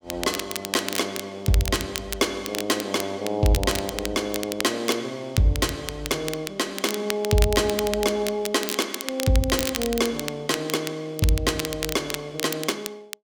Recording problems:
crackling; vinyl, SNR 7 dB

